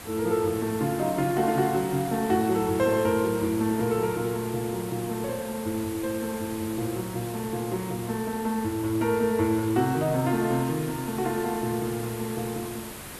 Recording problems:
background hiss; slope -3 dB per octave, SNR 12 dB

